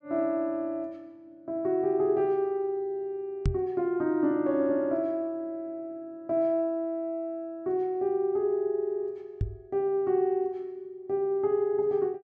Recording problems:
knock on the microphone; at 3.5 s and at 9.5 s; peak +4 dB vs average level

